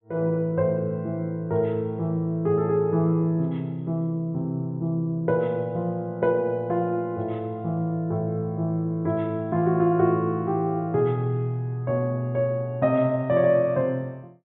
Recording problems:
low-pass filter; nothing above 4 kHz

